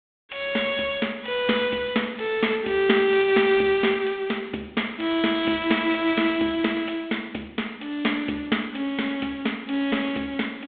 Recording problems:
phone line; 220 Hz to 3.6 kHz, G.726

